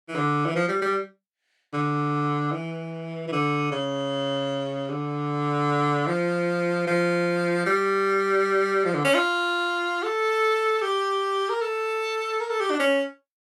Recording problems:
none

